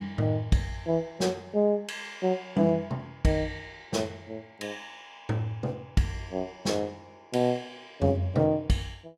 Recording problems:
none

